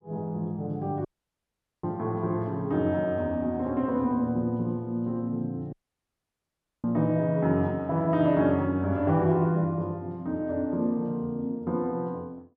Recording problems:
dropout; at 1 s for 1 s and at 5.5 s for 1 s

